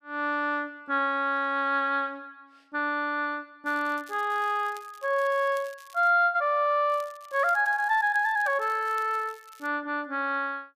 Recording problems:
crackle; from 3.5 to 6 s and from 7 to 9.5 s; loose cable, SNR 26 dB

